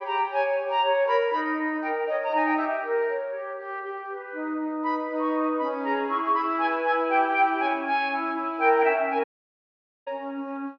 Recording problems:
treble missing; nothing above 6.2 kHz
dropout; at 9 s for 1 s

